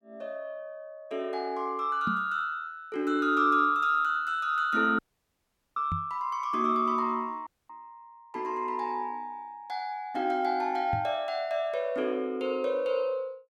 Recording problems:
microphone thump; at 2 s, at 6 s and at 11 s; peak -1 dB vs average level
dropout; at 5 s for 1 s and at 7.5 s

